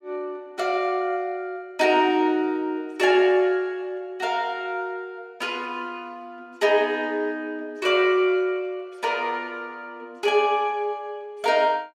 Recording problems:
none

